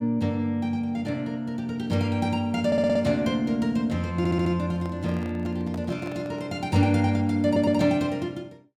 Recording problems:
audio stuttering; at 2.5 s, at 4 s and at 7.5 s
microphone handling noise; from 4.5 to 6.5 s; peak -11 dB vs average level

